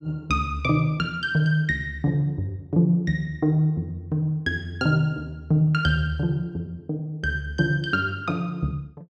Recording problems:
none

